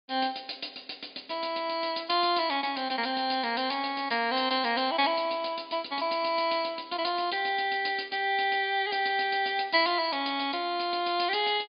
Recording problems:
treble missing; nothing above 4.9 kHz

